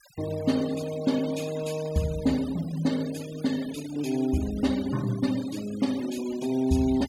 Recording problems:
denoising artefacts; signal-to-artefact ratio 16 dB

